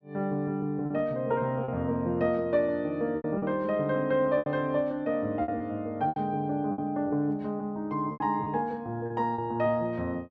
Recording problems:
packet loss; 7% of the sound replaced, filled with repeated pitch periods

